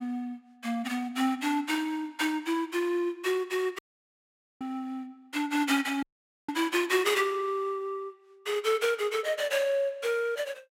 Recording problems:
dropout; at 4 s for 1 s and at 6 s

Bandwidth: 16 kHz